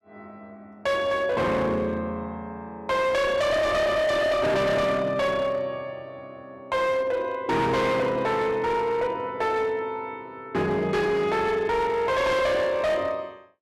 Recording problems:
distorted audio; hard clipping, signal-to-distortion ratio 8 dB

